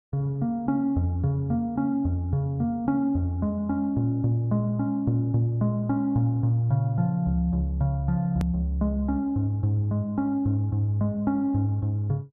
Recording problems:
hard cut with a click; at 8.5 s

